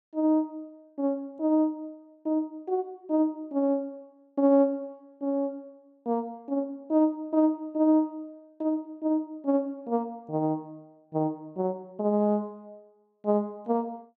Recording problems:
none

